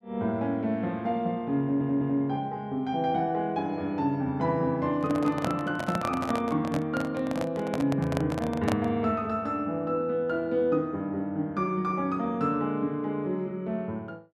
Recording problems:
audio stuttering; at 1.5 s
handling noise; from 5 to 9 s; peak +2 dB vs average level

